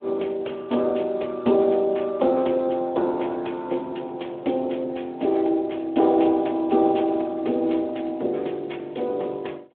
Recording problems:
phone line; 280 Hz to 3.6 kHz, Speex

